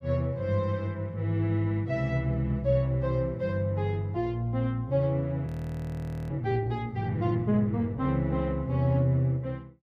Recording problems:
audio freezing; at 5.5 s for 1 s

